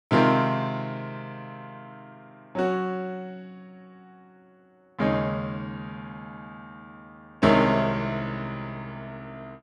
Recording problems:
none

